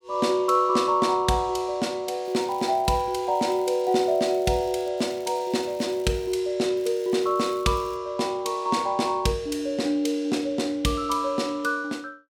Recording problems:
crackling; from 2 to 5 s, from 5 to 6.5 s and from 7 to 8 s; loose cable, SNR 26 dB

